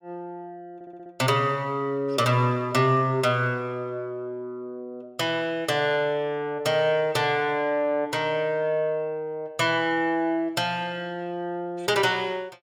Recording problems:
audio stuttering; at 1 s

